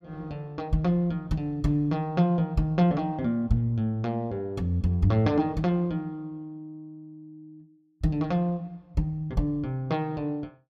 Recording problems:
none

